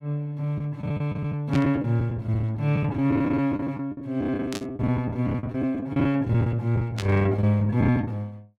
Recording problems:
lost packets; 15% of the sound replaced, filled with the last packet
burst of static; at 1.5 s, at 4.5 s and at 7 s; peak -4 dB vs average level

